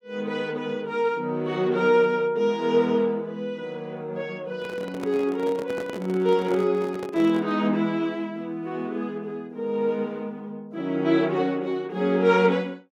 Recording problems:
microphone handling noise; from 4.5 to 7.5 s; peak -6 dB vs average level

